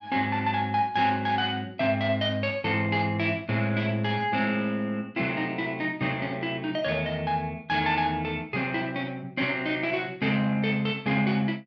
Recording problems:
none

